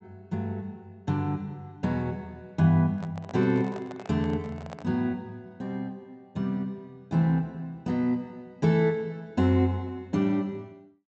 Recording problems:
low-pass filter; nothing above 8 kHz
microphone handling noise; from 3 to 5 s; peak -9 dB vs average level

